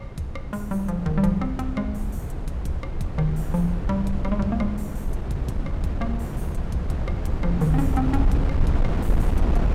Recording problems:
wind on the microphone; below 120 Hz, SNR 0 dB

